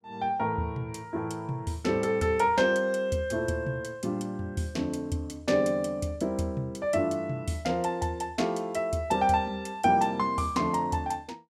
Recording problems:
none

